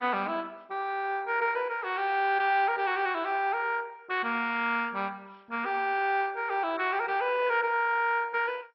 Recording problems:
codec artefacts; MP2, log-spectral distance 4 dB, nothing above 5 kHz

